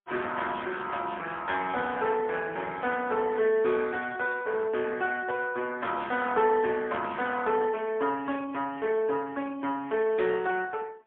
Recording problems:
telephone audio; 260 Hz to 3.4 kHz, AMR-NB, then MP3

